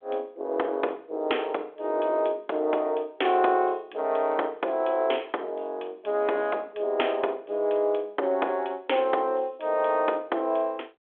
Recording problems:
telephone audio; 320 Hz to 3.5 kHz, G.726

